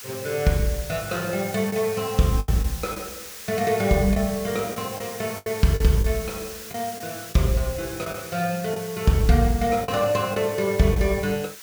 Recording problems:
background hiss; SNR 12 dB
lost packets; 5% of the sound replaced, filled with the last packet

